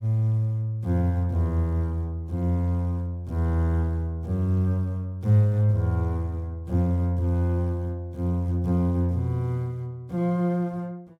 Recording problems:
none

